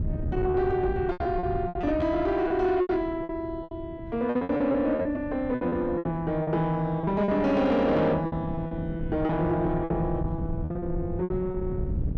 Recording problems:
distorted audio; soft clipping, signal-to-distortion ratio 12 dB
wind noise; below 160 Hz, SNR 10 dB
lost packets; 13% of the sound replaced, filled with repeated pitch periods

